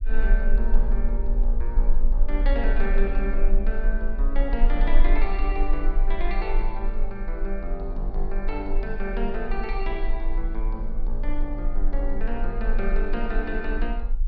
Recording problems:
low-frequency rumble; below 34 Hz, strongest tone 18 Hz, SNR -4 dB

